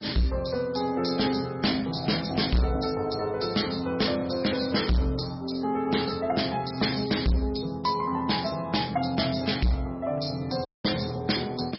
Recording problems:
codec artefacts; MP3, log-spectral distance 8 dB, nothing above 5.5 kHz
distorted audio; hard clipping, signal-to-distortion ratio 8 dB
audio cutting out; at 11 s

